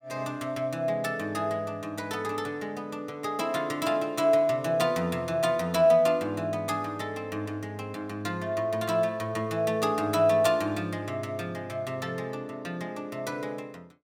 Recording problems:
none

